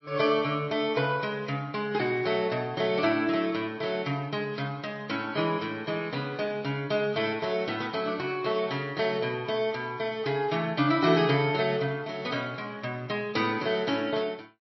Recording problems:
lossy codec; MP3, log-spectral distance 3 dB, nothing above 5.5 kHz

